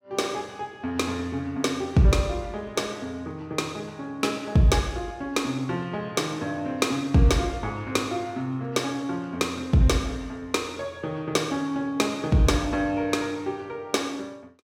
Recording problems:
none

